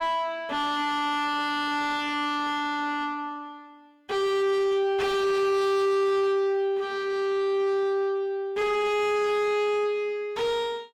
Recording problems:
distorted audio; soft clipping, signal-to-distortion ratio 5 dB

